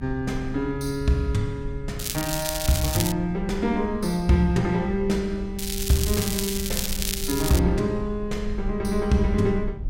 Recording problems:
hum; 60 Hz, harmonics up to 300 Hz, SNR 21 dB
rumble; below 62 Hz, SNR 12 dB
crackle; from 2 to 3 s and from 5.5 to 7.5 s; loose cable, SNR 4 dB

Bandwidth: 16 kHz